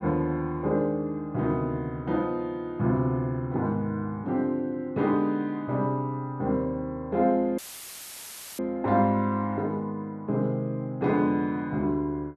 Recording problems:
dropout; at 7.5 s for 1 s; filled with static

